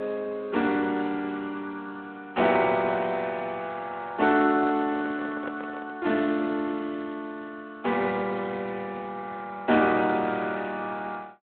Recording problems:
phone line; 170 Hz to 3.8 kHz, Speex
microphone handling noise; from 4.5 to 6 s; peak -6 dB vs average level

